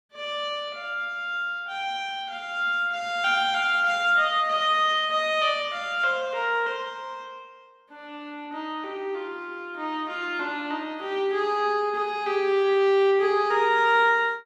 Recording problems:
none

